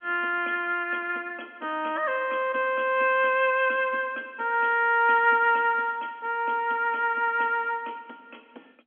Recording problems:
telephone audio; 220 Hz to 3.5 kHz, G.711

